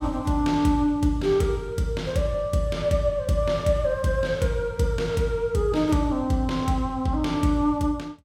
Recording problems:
none

